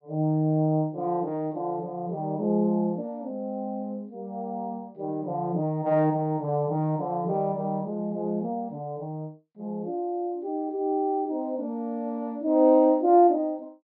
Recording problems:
low-pass filter; nothing above 5.5 kHz

